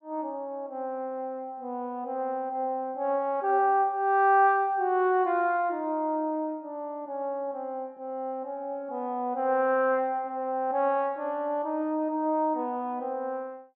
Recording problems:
none

